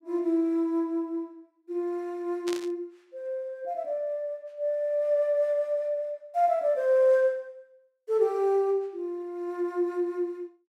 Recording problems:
static burst; at 2.5 s; peak -6 dB vs average level

